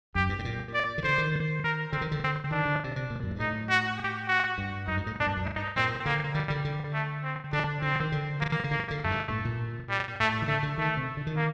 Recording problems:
packet loss; 15% of the sound replaced, filled with the last packet

